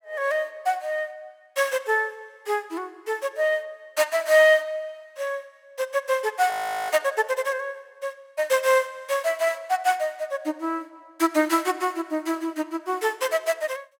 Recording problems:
audio freezing; at 6.5 s

